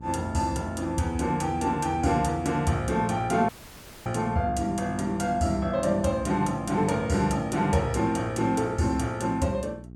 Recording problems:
hum; 60 Hz, harmonics up to 480 Hz, SNR 17 dB
audio cutting out; at 3.5 s for 0.5 s

